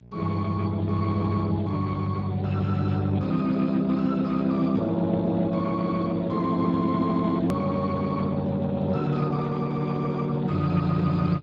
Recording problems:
lossy codec; Speex, log-spectral distance 3 dB, nothing above 13.1 kHz
hum; 60 Hz, harmonics up to 660 Hz, SNR 22 dB
edit click; at 7.5 s

